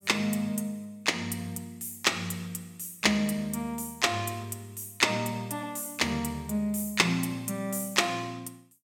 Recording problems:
none

